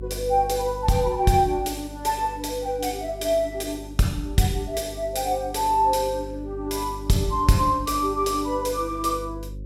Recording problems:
hum; 50 Hz, harmonics up to 550 Hz, SNR 15 dB

